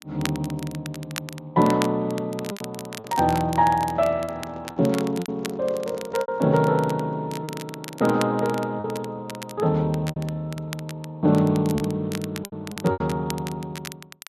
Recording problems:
lossy compression; Speex, log-spectral distance 2 dB
crackling; vinyl, SNR 15 dB
lost packets; 6% of the sound replaced, filled with repeated pitch periods
handling noise; from 3 to 6.5 s; peak -12 dB vs average level

